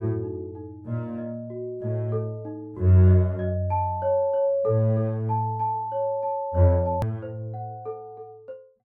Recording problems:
click at an edit; at 7 s

